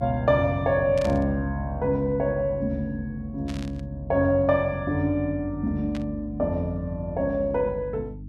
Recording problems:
hum; 50 Hz, harmonics up to 300 Hz, SNR 14 dB
static burst; at 1 s, at 3.5 s and at 6 s; peak -9 dB vs average level

